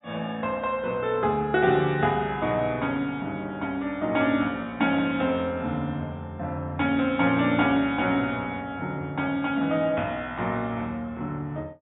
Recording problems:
low-pass filter; nothing above 4 kHz

